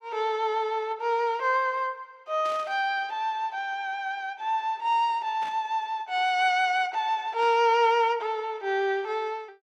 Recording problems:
static burst; at 2.5 s, at 5.5 s and at 7.5 s; peak -14 dB vs average level

